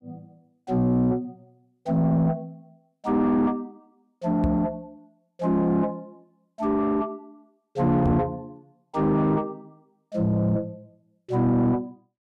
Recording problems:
distortion; soft clipping, signal-to-distortion ratio 11 dB
microphone thump; at 4.5 s and at 8 s; peak +4 dB vs average level

